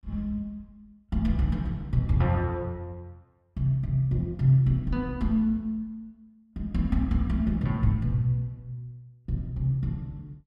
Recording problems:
none

